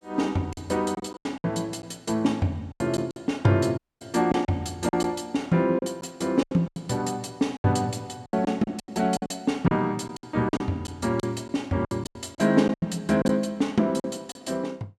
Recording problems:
lost packets; 11% of the sound replaced, filled with silence
dropout; at 4 s

